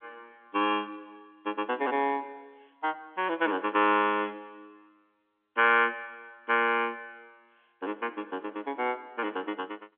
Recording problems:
phone line; 240 Hz to 3.4 kHz, G.711

